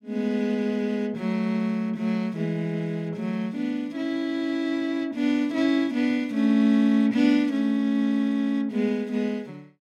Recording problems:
none

